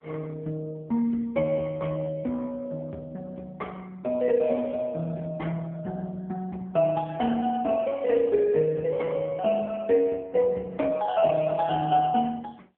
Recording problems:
telephone audio; 190 Hz to 3.3 kHz, AMR-NB

